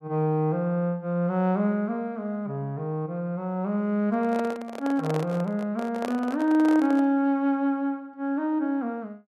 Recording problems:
handling noise; from 4 to 7 s; peak -3 dB vs average level

